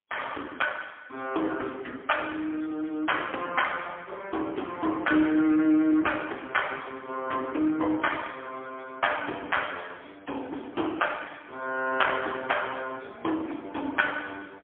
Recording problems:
phone line; 240 Hz to 3.3 kHz, AMR-NB, then MP3

